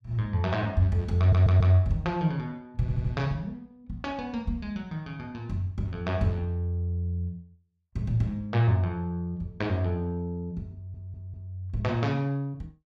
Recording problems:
stutter; at 1 s, at 3 s and at 11 s

